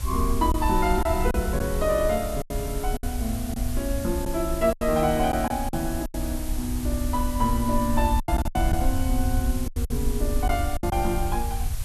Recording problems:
hiss; slope 0 dB per octave, SNR 11 dB
low-frequency rumble; below 70 Hz, SNR 3 dB
packet loss; 8% of the sound replaced, filled with silence

